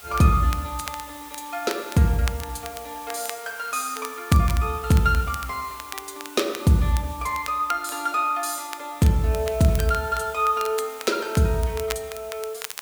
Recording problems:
background hiss; slope 0 dB per octave, SNR 18 dB
crackling; vinyl, SNR 15 dB

